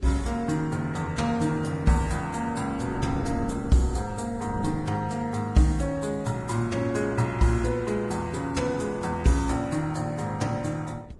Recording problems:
lossy codec; Vorbis, log-spectral distance 3 dB, nothing above 10.7 kHz
wind on the microphone; below 320 Hz, SNR 15 dB

